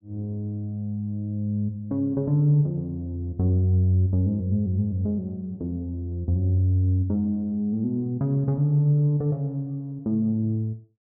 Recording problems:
treble missing; nothing above 3.5 kHz

